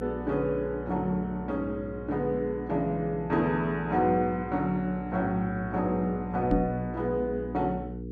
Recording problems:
electrical hum; 60 Hz, harmonics up to 480 Hz, SNR 11 dB
microphone bump; at 6.5 s; peak +5 dB vs average level

